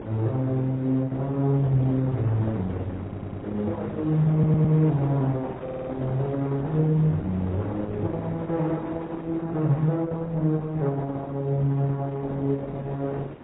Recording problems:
codec artefacts; Opus, then AAC, log-spectral distance 2 dB, nothing above 3.8 kHz
wind noise; below 690 Hz, SNR 15 dB
audio stuttering; at 3 s, at 4.5 s and at 5.5 s

